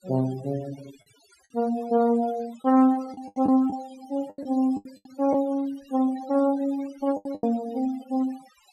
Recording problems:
noise reduction artefacts; signal-to-artefact ratio 21 dB
packet loss; 8% of the sound replaced, filled with the last packet

